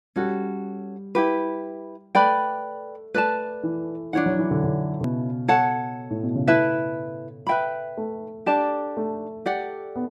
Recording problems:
hard cut with a click; at 5 s

